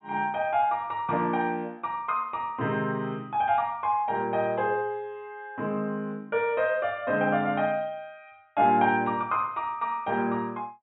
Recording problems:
low-pass filter; nothing above 4 kHz

